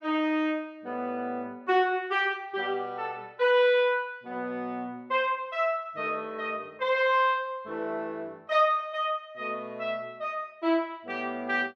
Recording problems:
none

